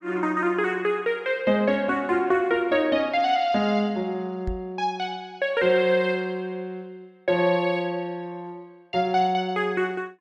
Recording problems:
microphone bump; at 4.5 s; peak -3 dB vs average level

